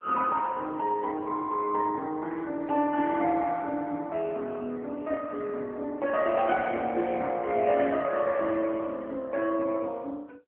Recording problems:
phone line; 240 Hz to 3.4 kHz, AMR-NB

